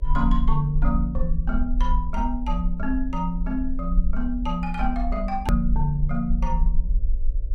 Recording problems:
hum; 50 Hz, harmonics up to 600 Hz, SNR 25 dB
rumble; below 46 Hz, SNR 0 dB
click at an edit; at 5.5 s

